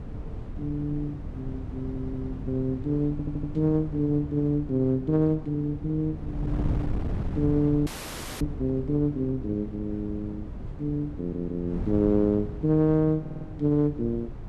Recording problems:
wind on the microphone; below 180 Hz, SNR 9 dB
audio stuttering; 4 times, first at 2 s
audio freezing; at 8 s for 0.5 s

